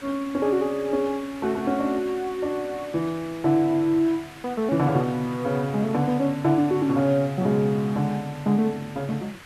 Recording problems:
background hiss; SNR 19 dB

